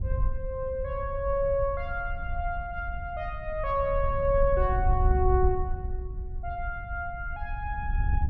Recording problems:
wind noise; below 70 Hz, SNR 3 dB

